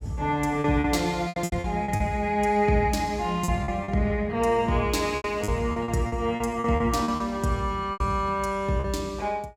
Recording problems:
lost packets; 11% of the sound replaced, filled with repeated pitch periods

